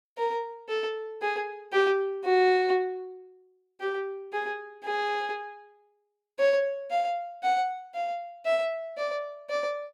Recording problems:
none

